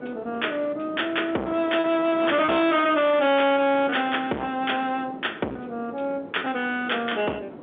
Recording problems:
phone line; 190 Hz to 3.5 kHz, G.711
distorted audio; hard clipping, uneven, signal-to-distortion ratio 5 dB
wind noise; below 840 Hz, SNR 16 dB
lost packets; 4% of the sound replaced, filled with repeated pitch periods

